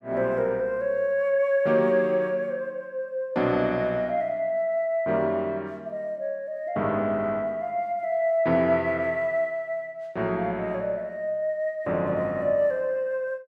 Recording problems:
none

